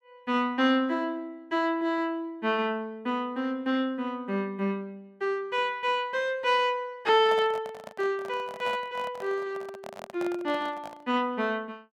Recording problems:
microphone handling noise; from 7 to 11 s; peak -6 dB vs average level

